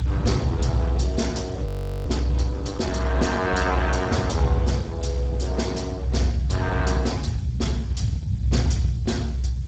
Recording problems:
lossy codec; Speex, log-spectral distance 3 dB, nothing above 7.6 kHz
hiss; slope 0 dB per octave, SNR 26 dB
rumble; below 120 Hz, strongest tone 62 Hz, SNR 0 dB
audio freezing; at 1.5 s

